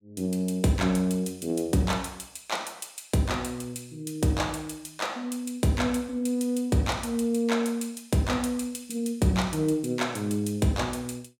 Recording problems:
none

